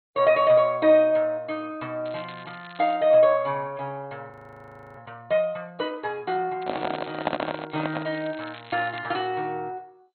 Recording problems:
lossy compression; MP2, log-spectral distance 5 dB, nothing above 4.2 kHz
crackle; at 2 s and from 6.5 to 9 s; loose cable, SNR 22 dB
audio freezing; at 4.5 s for 0.5 s
handling noise; from 6.5 to 8 s; peak +3 dB vs average level

